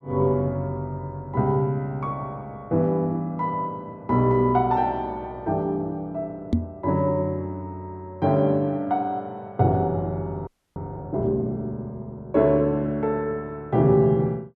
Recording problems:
microphone bump; at 6.5 s; peak +6 dB vs average level
frozen audio; at 10 s

